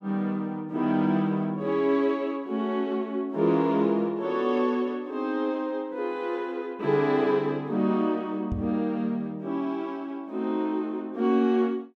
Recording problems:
knock on the microphone; at 8.5 s; peak -1 dB vs average level

